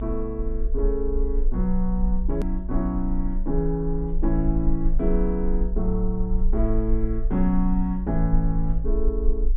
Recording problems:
low-pass filter; nothing above 3.7 kHz
low-frequency rumble; below 46 Hz, strongest tone 24 Hz, SNR 2 dB
edit click; at 2.5 s

